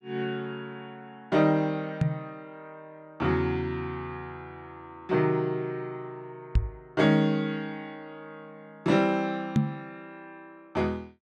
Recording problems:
knock on the microphone; at 2 s, at 6.5 s and at 9.5 s; peak +8 dB vs average level

